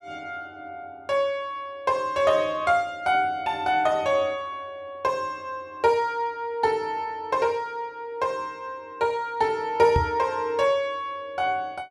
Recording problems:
knock on the microphone; at 10 s; peak +4 dB vs average level

